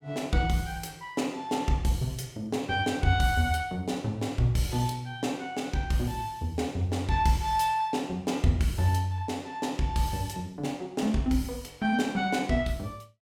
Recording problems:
none

